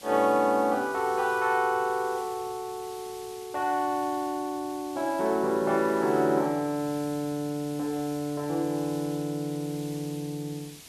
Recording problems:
hiss; SNR 18 dB

